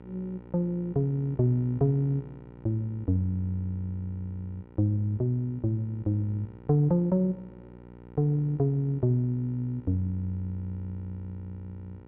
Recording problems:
mains hum; 60 Hz, harmonics up to 1.5 kHz, SNR 19 dB

